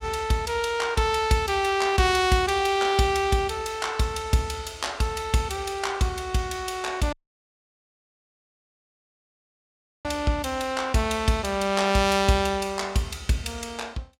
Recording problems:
dropout; at 7 s for 3 s

